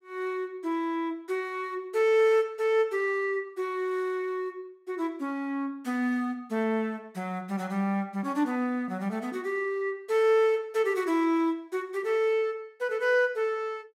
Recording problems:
none

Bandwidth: 16 kHz